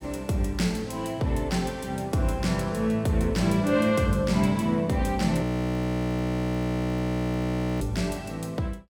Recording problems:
audio freezing; at 5.5 s for 2.5 s

